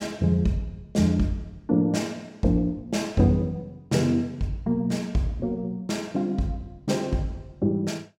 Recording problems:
none

